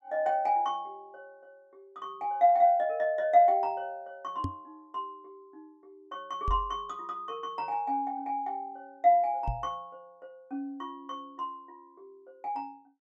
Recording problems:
microphone bump; at 4.5 s, at 6.5 s and at 9.5 s; peak -1 dB vs average level

